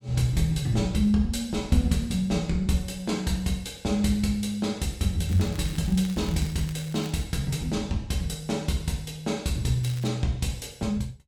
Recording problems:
crackling; from 5.5 to 7 s and at 10 s; loose cable, SNR 19 dB

